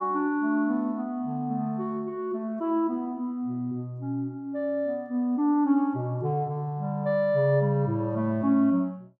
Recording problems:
none

